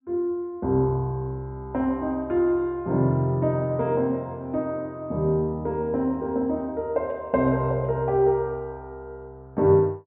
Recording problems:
low-pass filter; nothing above 4 kHz

